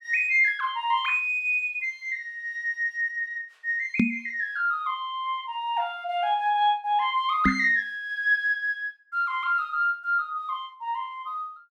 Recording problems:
microphone bump; at 4 s and at 7.5 s; peak +7 dB vs average level

